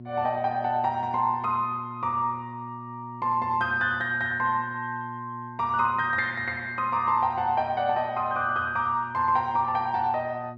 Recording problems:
electrical hum; 60 Hz, harmonics up to 720 Hz, SNR 16 dB

